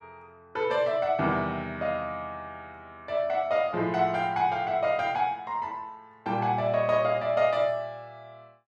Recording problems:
none

